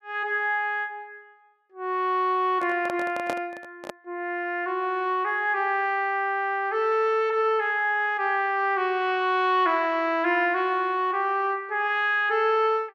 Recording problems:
handling noise; from 2.5 to 4 s; peak -3 dB vs average level

